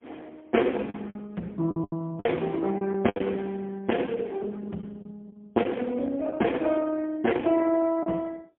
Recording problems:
phone line; 130 Hz to 3.3 kHz, AMR-NB, then MP3
packet loss; 7% of the sound replaced, filled with the last packet

